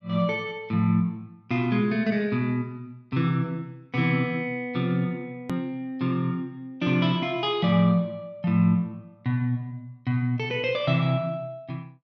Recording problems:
edit click; at 5.5 s

